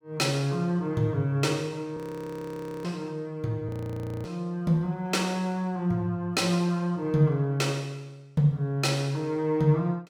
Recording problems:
frozen audio; at 2 s for 1 s and at 3.5 s for 0.5 s

